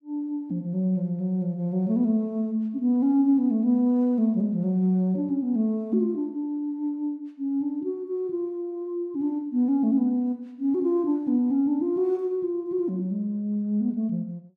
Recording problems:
none

